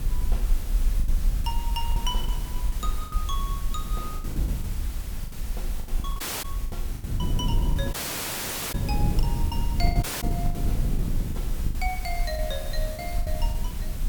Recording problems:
hiss; slope -2 dB per octave, SNR 5 dB
low-frequency rumble; below 46 Hz, SNR -4 dB
wind noise; below 160 Hz, SNR -2 dB
lost packets; 12% of the sound replaced, filled with the last packet
dropout; at 6 s, at 8 s for 1 s and at 10 s

